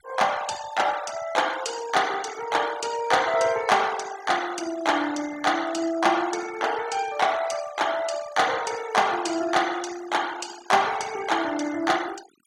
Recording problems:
noise reduction artefacts; signal-to-artefact ratio 15 dB

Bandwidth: 16.5 kHz